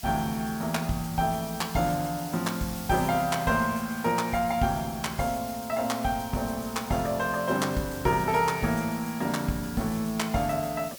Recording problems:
hiss; SNR 13 dB

